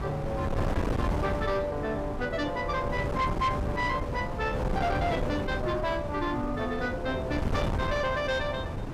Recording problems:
distorted audio; soft clipping, signal-to-distortion ratio 12 dB
wind noise; below 450 Hz, SNR 3 dB

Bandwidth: 15.5 kHz